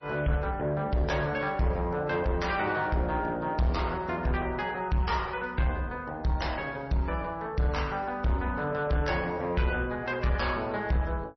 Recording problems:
codec artefacts; MP3, log-spectral distance 2 dB, nothing above 5.8 kHz
distortion; soft clipping, signal-to-distortion ratio 11 dB

